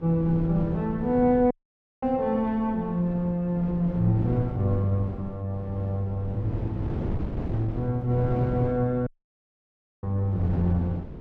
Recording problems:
wind noise; below 270 Hz, SNR 9 dB
audio cutting out; at 1.5 s for 0.5 s and at 9 s for 1 s

